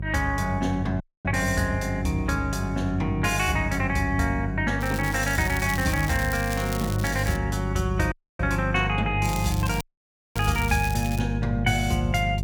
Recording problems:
hum; 50 Hz, harmonics up to 400 Hz, SNR 4 dB
audio cutting out; at 1 s, at 8 s and at 10 s for 0.5 s
crackling; from 5 to 7.5 s and from 9.5 to 11 s; loose cable, SNR 11 dB

